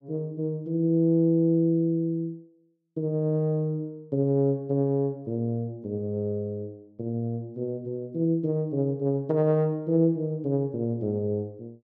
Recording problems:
none

